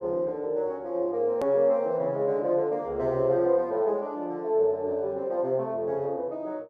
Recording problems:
edit click; at 1.5 s

